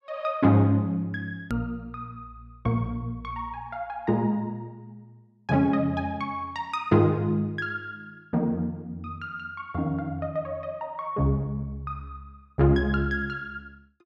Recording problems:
click at an edit; at 1.5 s

